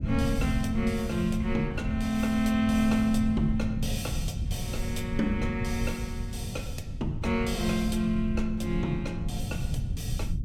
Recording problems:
rumble; below 130 Hz, SNR 5 dB

